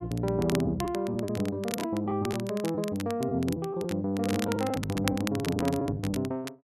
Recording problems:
crackling; vinyl, SNR 11 dB
lost packets; 9% of the sound replaced, filled with the last packet

